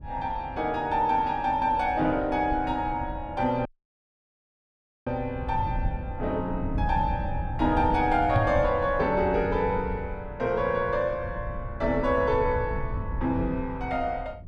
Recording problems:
rumble; below 120 Hz, SNR 9 dB
audio cutting out; at 3.5 s for 1.5 s
knock on the microphone; at 8.5 s; peak +6 dB vs average level

